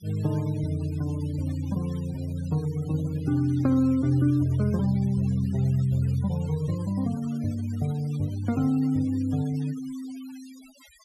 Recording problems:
denoising artefacts; signal-to-artefact ratio 22 dB

